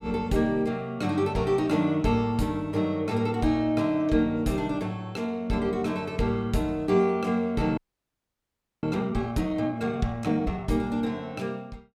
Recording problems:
audio freezing; at 8 s for 1 s

